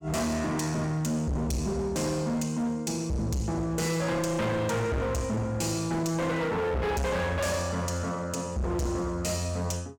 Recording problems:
distorted audio; hard clipping, signal-to-distortion ratio 6 dB

